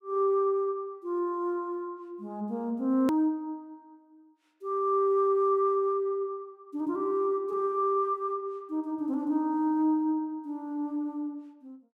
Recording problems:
hard cut with a click; at 3 s

